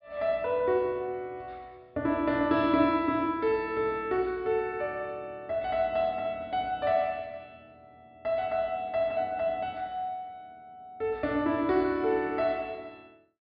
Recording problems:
treble cut off; nothing above 5.5 kHz

